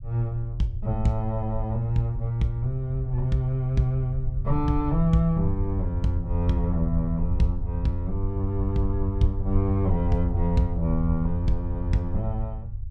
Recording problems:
rumble; below 72 Hz, SNR 6 dB

